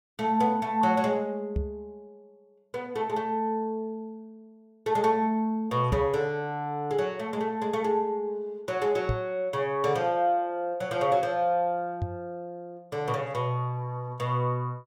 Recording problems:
microphone thump; 4 times, first at 1.5 s; peak +3 dB vs average level

